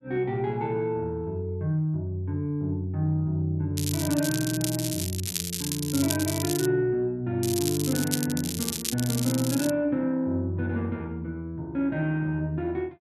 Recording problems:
crackle; from 4 to 6.5 s and from 7.5 to 9.5 s; loose cable, SNR 4 dB

